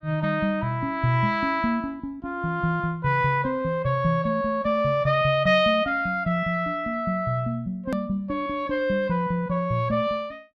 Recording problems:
edit click; at 8 s

